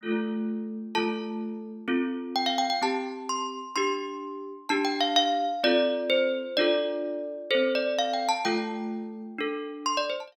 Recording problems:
none

